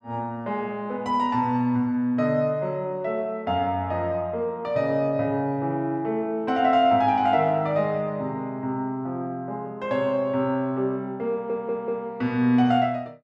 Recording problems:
audio stuttering; at 11 s

